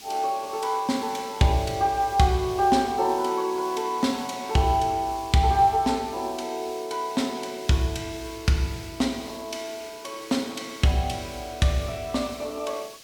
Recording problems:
hiss; SNR 18 dB

